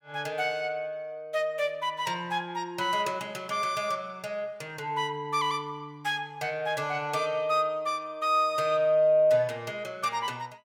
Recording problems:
none

